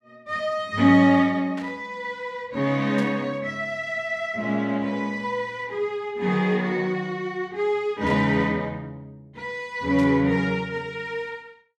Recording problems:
burst of static; 4 times, first at 1.5 s; peak -11 dB vs average level

